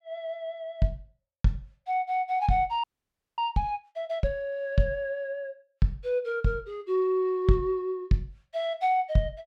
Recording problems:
audio freezing; at 3 s for 0.5 s

